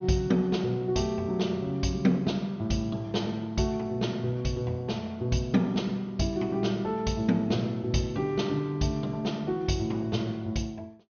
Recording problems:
treble cut off; nothing above 6.4 kHz

